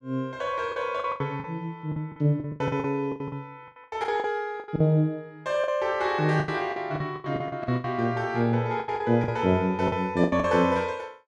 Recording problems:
packet loss; 15% of the sound replaced, filled with the last packet

